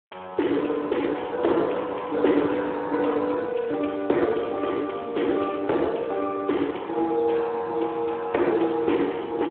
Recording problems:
phone line; 260 Hz to 3.4 kHz, Speex

